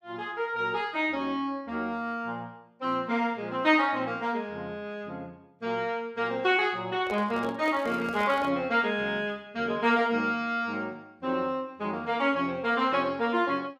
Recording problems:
handling noise; from 7 to 8.5 s; peak -6 dB vs average level
crackling; at 7.5 s; loose cable, SNR 27 dB

